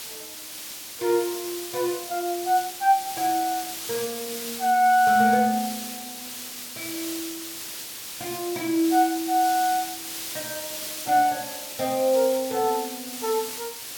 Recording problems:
background hiss; slope +1 dB per octave, SNR 9 dB

